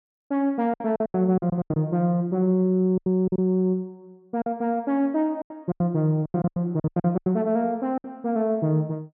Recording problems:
lost packets; 14% of the sound replaced, filled with silence

